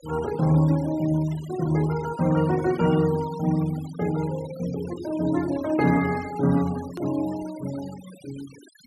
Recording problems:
noise reduction artefacts; signal-to-artefact ratio 18 dB
edit click; at 7 s

